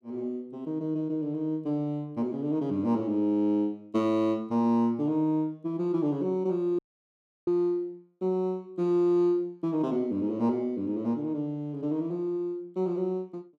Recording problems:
dropout; at 7 s for 0.5 s

